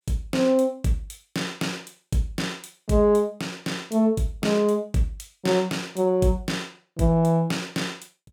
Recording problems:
none

